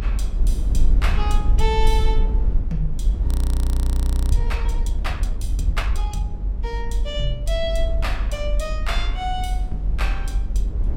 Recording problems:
electrical hum; 50 Hz, harmonics up to 600 Hz, SNR 15 dB
rumble; below 60 Hz, SNR -6 dB
wind noise; below 270 Hz, SNR 16 dB
audio freezing; at 3.5 s for 1 s

